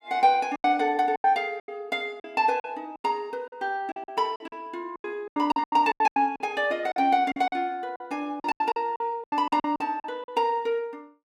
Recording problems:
packet loss; 16% of the sound replaced, filled with silence

